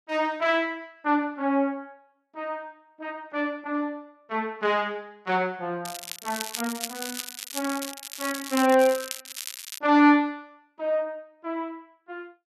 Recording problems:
crackling; from 6 to 10 s; loose cable, SNR 9 dB

